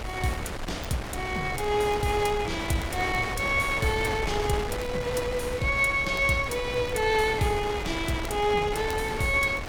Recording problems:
wind noise; below 1.5 kHz, SNR 7 dB
crackle; vinyl, SNR 27 dB

